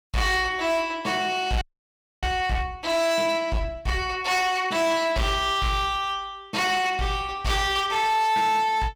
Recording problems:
distortion; hard clipping, signal-to-distortion ratio 11 dB
frozen audio; at 1.5 s for 0.5 s

